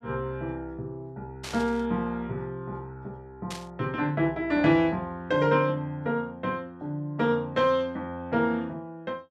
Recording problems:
burst of static; at 1.5 s and at 3.5 s; peak -6 dB vs average level

